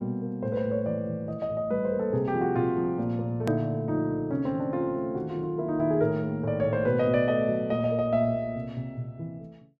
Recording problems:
edit click; at 3.5 s

